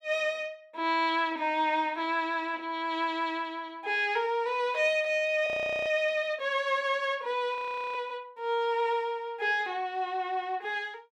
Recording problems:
frozen audio; at 5.5 s and at 7.5 s

